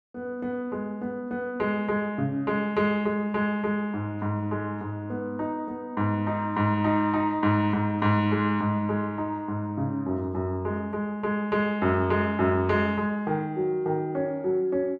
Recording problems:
none

